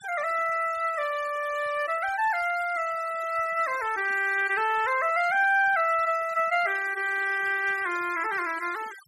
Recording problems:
noise reduction artefacts; signal-to-artefact ratio 19 dB

